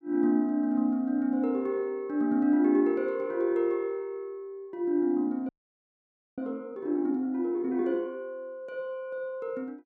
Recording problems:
audio freezing; at 5.5 s for 1 s

